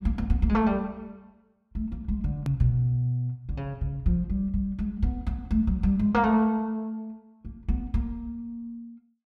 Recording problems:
click at an edit; at 2.5 s

